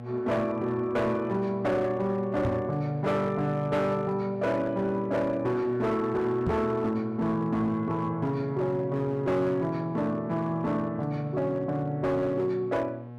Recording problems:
distorted audio; hard clipping, signal-to-distortion ratio 12 dB
hum; 60 Hz, harmonics up to 1.3 kHz, SNR 13 dB
microphone thump; at 2.5 s and at 6.5 s; peak +1 dB vs average level

